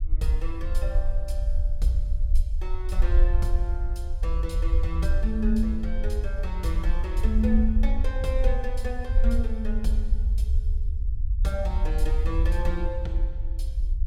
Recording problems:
low-frequency rumble; below 56 Hz, SNR -5 dB

